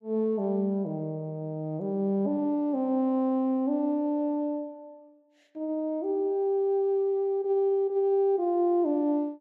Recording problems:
none

